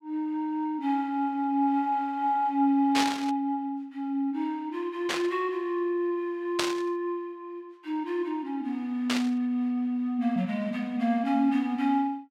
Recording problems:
static burst; 4 times, first at 3 s; peak +5 dB vs average level

